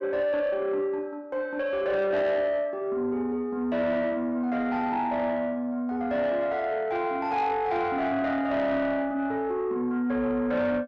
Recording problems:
distortion; soft clipping, signal-to-distortion ratio 12 dB

